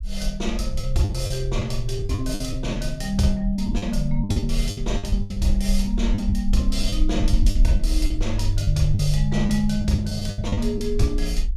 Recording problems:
low-frequency rumble; below 46 Hz, SNR 3 dB
lost packets; 11% of the sound replaced, filled with the last packet

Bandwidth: 15 kHz